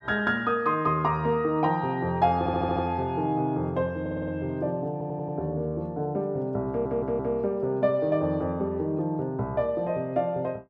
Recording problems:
stutter; 4 times, first at 2.5 s

